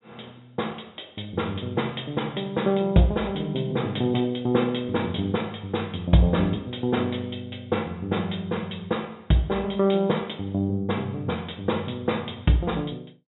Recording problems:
treble missing; nothing above 3.8 kHz

